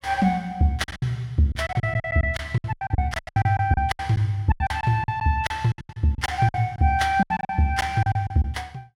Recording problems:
packet loss; 18% of the sound replaced, filled with silence

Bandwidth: 16.5 kHz